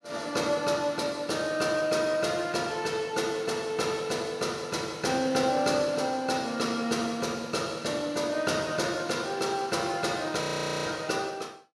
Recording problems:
frozen audio; at 10 s

